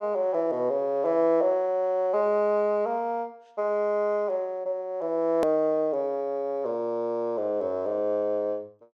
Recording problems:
hard cut with a click; at 5.5 s

